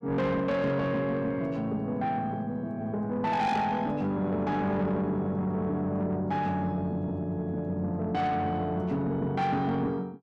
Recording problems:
distortion; soft clipping, signal-to-distortion ratio 10 dB

